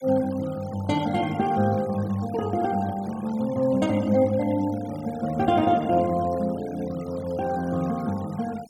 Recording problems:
noise reduction artefacts; signal-to-artefact ratio 21 dB

